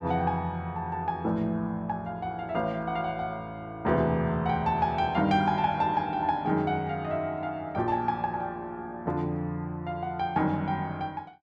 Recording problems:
none

